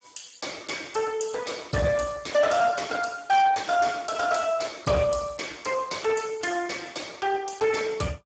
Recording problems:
lossy compression; Speex, log-spectral distance 6 dB, nothing above 7.6 kHz
distorted audio; soft clipping, signal-to-distortion ratio 11 dB

